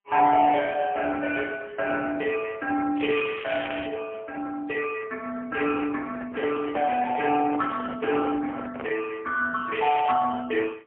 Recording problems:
telephone audio; 300 Hz to 3 kHz, AMR-NB, then MP3
crackle; at 3 s and at 9.5 s; loose cable, SNR 10 dB
handling noise; from 6 to 9 s; peak -5 dB vs average level

